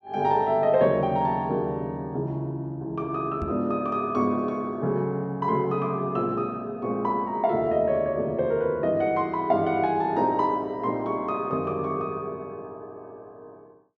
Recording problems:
microphone thump; at 3.5 s; peak -4 dB vs average level

